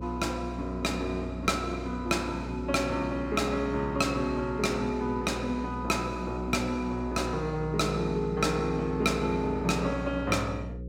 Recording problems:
mains hum; 60 Hz, harmonics up to 540 Hz, SNR 10 dB

